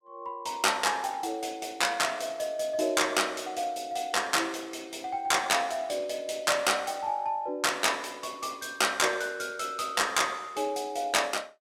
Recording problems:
none

